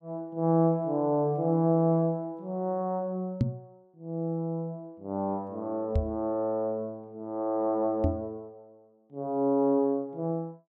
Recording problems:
microphone bump; at 3.5 s, at 6 s and at 8 s; peak +7 dB vs average level

